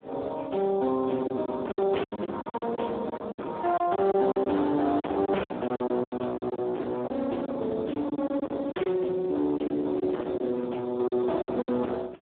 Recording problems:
phone line; 220 Hz to 2.1 kHz, Speex
distorted audio; hard clipping, uneven, signal-to-distortion ratio 5 dB
packet loss; 12% of the sound replaced, filled with silence

